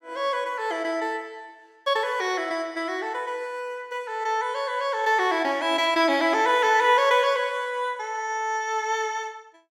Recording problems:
none

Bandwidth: 17 kHz